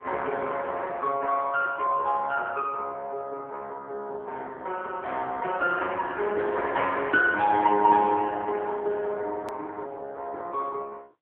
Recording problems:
telephone audio; 370 Hz to 3.3 kHz, AMR-NB
click at an edit; at 9.5 s

